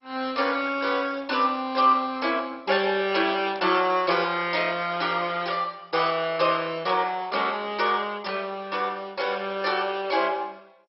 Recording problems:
lossy codec; MP2, log-spectral distance 4 dB, nothing above 5.5 kHz
burst of static; at 3.5 s; peak -15 dB vs average level

